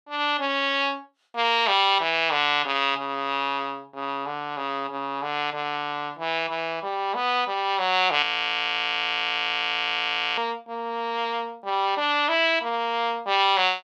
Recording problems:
frozen audio; at 8 s for 2 s

